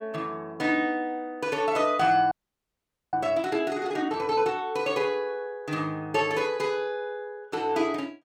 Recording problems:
audio freezing; at 2.5 s for 1 s

